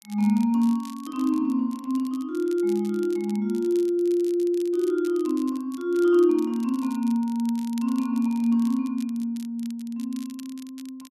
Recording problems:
crackling; vinyl, SNR 24 dB

